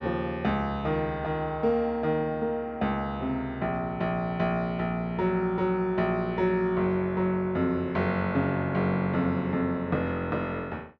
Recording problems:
none

